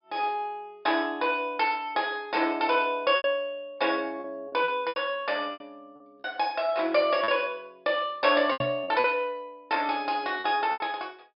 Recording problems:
low-pass filter; nothing above 5.5 kHz
lost packets; 7% of the sound replaced, filled with repeated pitch periods
knock on the microphone; at 8.5 s; peak -6 dB vs average level

